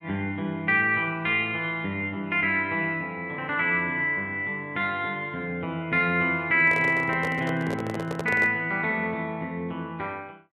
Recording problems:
microphone handling noise; from 6.5 to 8.5 s; peak -3 dB vs average level

